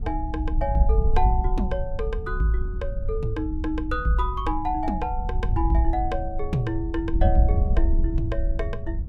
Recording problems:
wind on the microphone; below 70 Hz, SNR 0 dB

